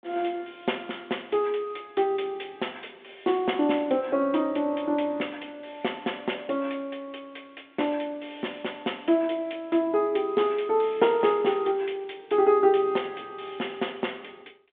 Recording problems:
telephone audio; 220 Hz to 3.5 kHz, G.726

